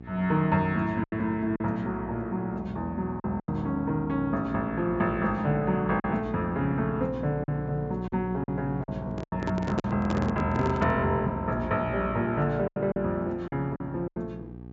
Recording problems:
treble missing; nothing above 8 kHz
mains hum; 60 Hz, harmonics up to 840 Hz, SNR 11 dB
lost packets; 6% of the sound replaced, filled with silence
handling noise; from 9 to 11 s; peak +2 dB vs average level

